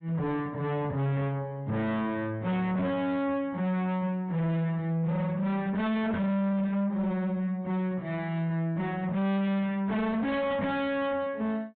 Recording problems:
treble cut off; nothing above 4 kHz
distortion; soft clipping, signal-to-distortion ratio 7 dB

